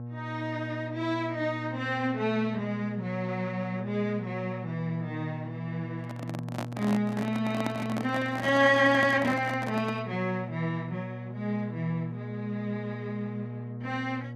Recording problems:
hum; 60 Hz, harmonics up to 840 Hz, SNR 9 dB
handling noise; from 6 to 10 s; peak +1 dB vs average level

